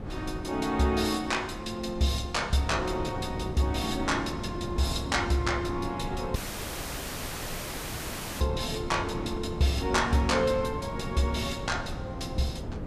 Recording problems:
wind noise; below 310 Hz, SNR 8 dB
dropout; at 6.5 s for 2 s

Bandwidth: 14.5 kHz